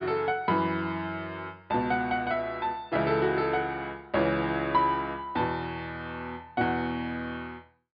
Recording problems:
treble missing; nothing above 5 kHz

